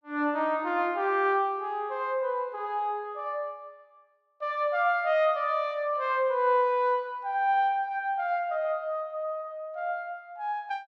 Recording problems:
none

